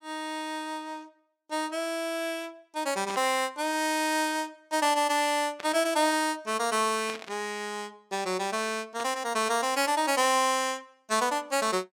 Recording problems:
burst of static; 4 times, first at 3 s; peak -6 dB vs average level

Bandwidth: 17 kHz